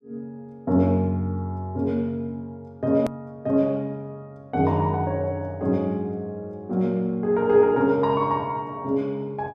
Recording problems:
click at an edit; at 3 s

